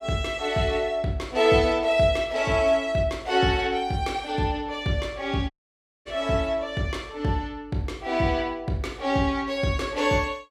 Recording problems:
audio cutting out; at 5.5 s for 0.5 s

